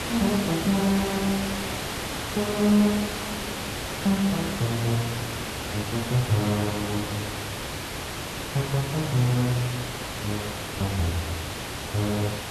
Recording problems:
background hiss; slope -3 dB per octave, SNR 4 dB

